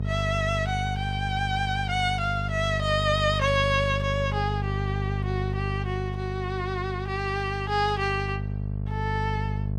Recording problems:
hum; 50 Hz, harmonics up to 500 Hz, SNR 3 dB

